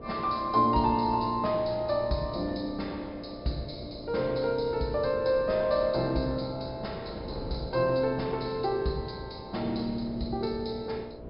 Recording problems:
treble missing; nothing above 5.5 kHz
electrical hum; 60 Hz, harmonics up to 660 Hz, SNR 17 dB
wind noise; below 430 Hz, SNR 17 dB

